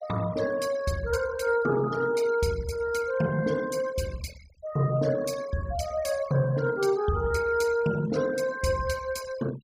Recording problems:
noise reduction artefacts; signal-to-artefact ratio 17 dB

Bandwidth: 15.5 kHz